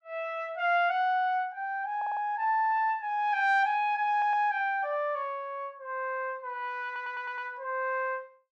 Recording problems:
audio stuttering; at 2 s, at 4 s and at 7 s

